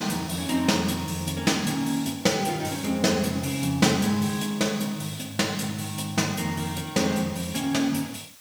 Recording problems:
hiss; slope +2 dB per octave, SNR 21 dB

